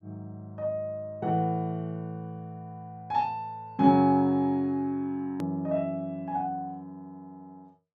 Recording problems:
edit click; at 5.5 s

